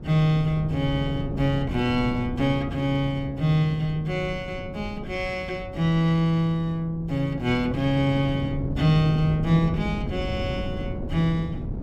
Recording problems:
wind noise; below 240 Hz, SNR 9 dB

